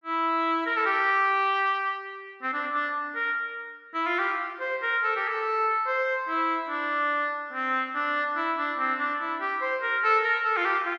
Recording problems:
none

